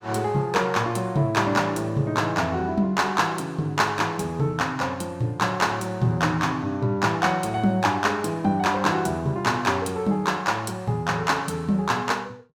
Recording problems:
none

